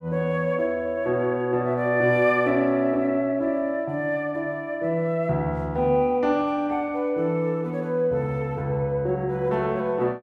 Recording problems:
none

